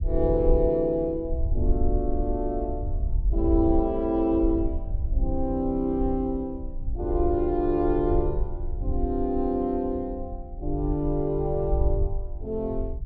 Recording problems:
rumble; below 62 Hz, SNR 5 dB

